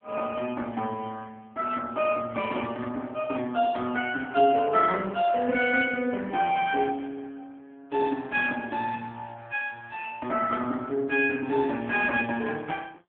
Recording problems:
phone line; 170 Hz to 3.3 kHz, AMR-NB

